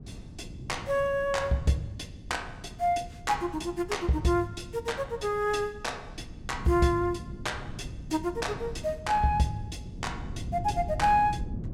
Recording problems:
wind noise; below 180 Hz, SNR 12 dB

